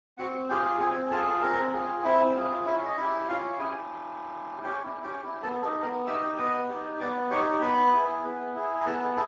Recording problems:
lossy codec; Speex, log-spectral distance 4 dB
frozen audio; at 4 s for 1 s

